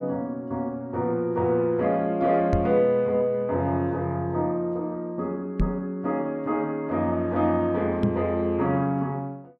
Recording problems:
microphone bump; at 2.5 s, at 5.5 s and at 8 s; peak +4 dB vs average level

